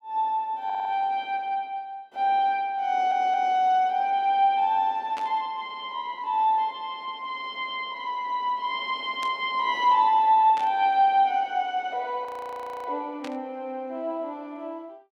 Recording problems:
audio stuttering; at 0.5 s and at 3 s
burst of static; 4 times, first at 5 s; peak -10 dB vs average level
audio freezing; at 12 s for 0.5 s

